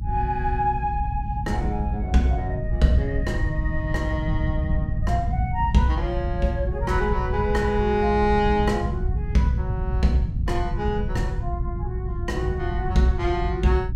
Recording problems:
low-frequency rumble; below 120 Hz, SNR 2 dB

